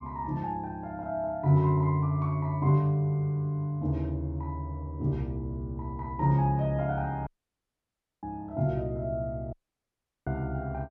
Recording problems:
audio cutting out; at 7.5 s for 1 s and at 9.5 s for 0.5 s

